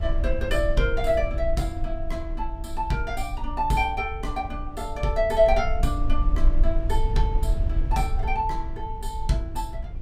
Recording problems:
low-frequency rumble; below 50 Hz, strongest tone 24 Hz, SNR 3 dB

